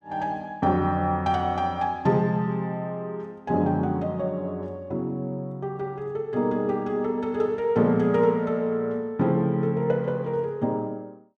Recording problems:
none

